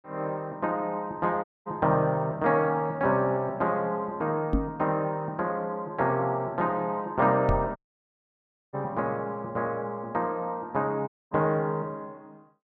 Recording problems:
dropout; at 1.5 s, at 8 s for 1 s and at 11 s
microphone bump; at 4.5 s and at 7.5 s; peak +5 dB vs average level

